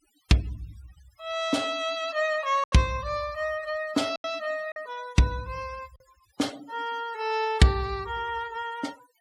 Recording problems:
denoising artefacts; signal-to-artefact ratio 19 dB
packet loss; 3% of the sound replaced, filled with silence

